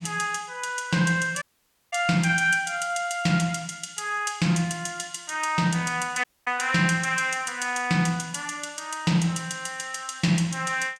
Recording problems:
audio cutting out; at 1.5 s for 0.5 s and at 6 s

